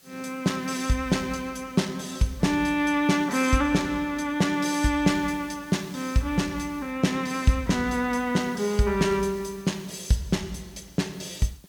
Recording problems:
background hiss; slope 0 dB per octave, SNR 26 dB

